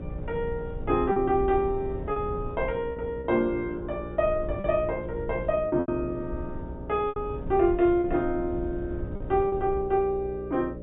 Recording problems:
treble missing; nothing above 4 kHz
electrical hum; 60 Hz, harmonics up to 600 Hz, SNR 13 dB
wind noise; below 100 Hz, SNR 13 dB
lost packets; 5% of the sound replaced, filled with repeated pitch periods

